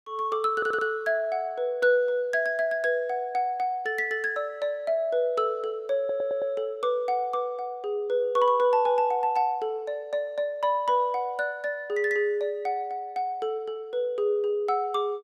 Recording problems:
stutter; at 0.5 s and at 6 s

